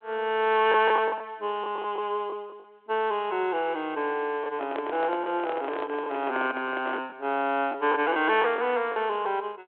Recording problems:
telephone audio; 300 Hz to 3.4 kHz, G.726
packet loss; 6% of the sound replaced, filled with the last packet
microphone handling noise; from 4.5 to 7 s; peak -5 dB vs average level

